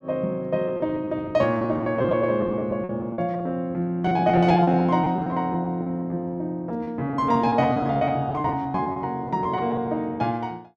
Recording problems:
lost packets; 15% of the sound replaced, filled with repeated pitch periods

